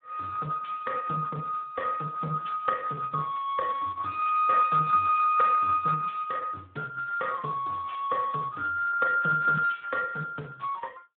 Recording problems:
telephone audio; 320 Hz to 3.3 kHz, Speex

